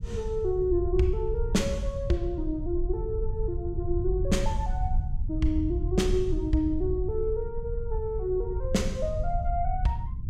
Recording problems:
low-frequency rumble; below 78 Hz, SNR 3 dB

